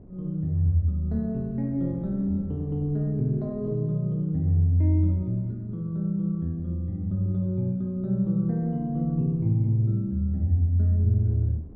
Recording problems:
wind on the microphone; below 230 Hz, SNR 22 dB

